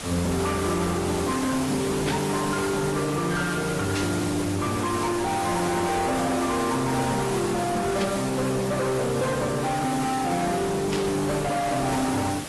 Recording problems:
lossy codec; AAC, then AAC, log-spectral distance 10 dB, nothing above 11 kHz
distortion; soft clipping, signal-to-distortion ratio 7 dB
hiss; slope -3 dB per octave, SNR 8 dB
static burst; 4 times, first at 2 s; peak -2 dB vs average level

